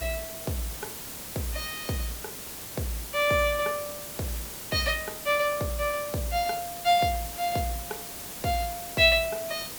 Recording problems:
hiss; slope -2 dB per octave, SNR 9 dB

